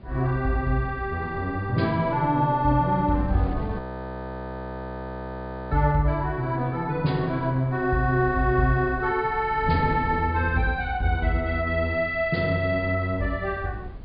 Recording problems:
low-pass filter; nothing above 5 kHz
wind noise; below 190 Hz, SNR 16 dB
audio freezing; at 4 s for 2 s

